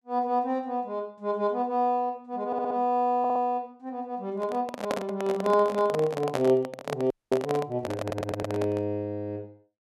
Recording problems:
stutter; at 2.5 s, at 3 s and at 8 s
microphone handling noise; from 4.5 to 9 s; peak +3 dB vs average level
audio freezing; at 7 s

